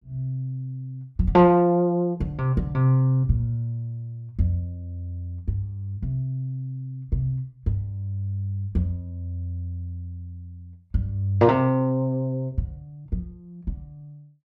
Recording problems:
none

